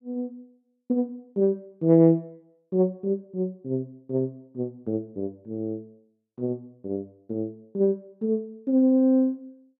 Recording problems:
none

